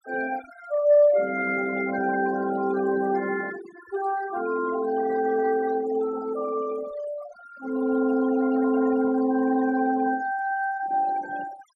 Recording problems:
noise reduction artefacts; signal-to-artefact ratio 15 dB

